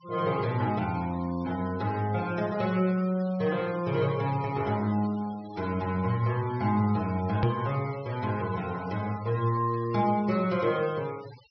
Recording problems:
low-pass filter; nothing above 5.5 kHz
denoising artefacts; signal-to-artefact ratio 20 dB
hard cut with a click; at 7.5 s

